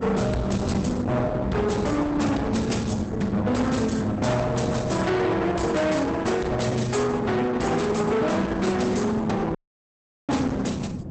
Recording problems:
codec artefacts; Opus, log-spectral distance 4 dB, nothing above 8 kHz
distorted audio; hard clipping, signal-to-distortion ratio 7 dB
wind on the microphone; below 390 Hz, SNR 8 dB
dropout; at 9.5 s for 0.5 s

